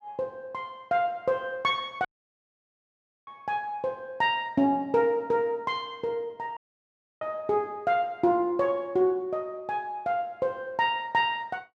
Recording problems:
audio cutting out; at 2 s for 1 s and at 6.5 s for 0.5 s

